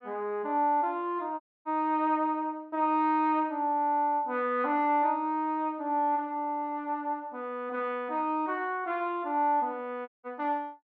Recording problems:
audio cutting out; at 1.5 s and at 10 s

